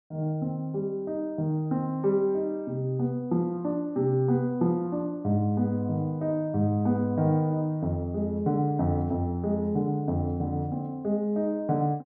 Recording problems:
none

